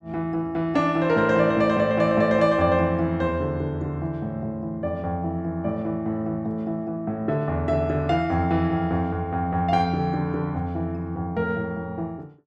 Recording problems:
none

